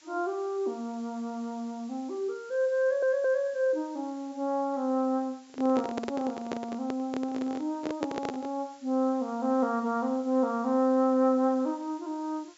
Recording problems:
treble cut off; nothing above 8 kHz
background hiss; SNR 27 dB
audio stuttering; at 3 s
handling noise; from 5.5 to 8.5 s; peak 0 dB vs average level

